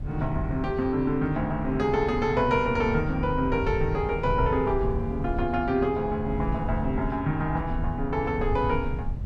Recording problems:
wind on the microphone; below 110 Hz, SNR 7 dB

